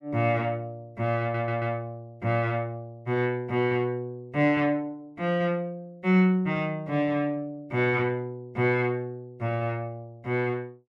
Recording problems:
stutter; at 1 s

